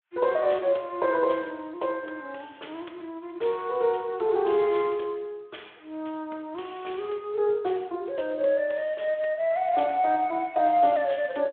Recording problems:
phone line; 320 Hz to 3.5 kHz, Speex

